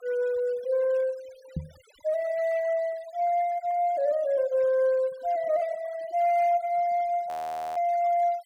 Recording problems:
noise reduction artefacts; signal-to-artefact ratio 26 dB
microphone thump; at 1.5 s; peak -1 dB vs average level
audio freezing; at 7.5 s

